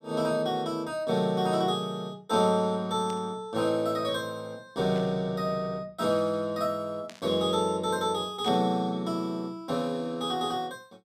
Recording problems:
burst of static; 4 times, first at 3 s; peak -12 dB vs average level

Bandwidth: 14.5 kHz